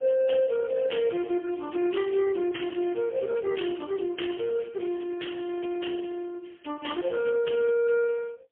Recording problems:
telephone audio; 260 Hz to 3.3 kHz, AMR-NB, then MP3

